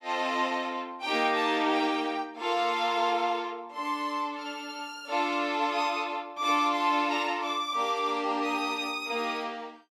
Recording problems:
none

